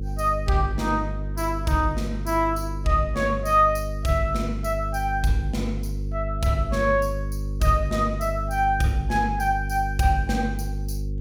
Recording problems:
electrical hum; 50 Hz, harmonics up to 500 Hz, SNR 6 dB

